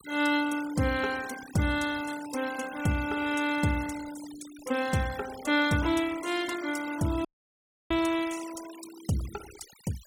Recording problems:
denoising artefacts; signal-to-artefact ratio 14 dB
dropout; at 7.5 s for 0.5 s

